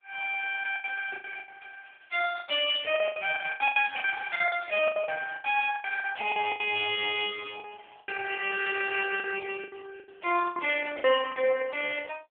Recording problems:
telephone audio; 340 Hz to 3.3 kHz, AMR-NB
lost packets; 14% of the sound replaced, filled with the last packet

